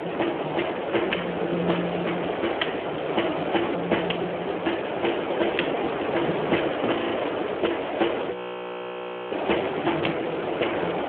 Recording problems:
telephone audio; 240 Hz to 3.2 kHz, Speex
background hiss; SNR 0 dB
audio freezing; at 7 s and at 8.5 s for 1 s

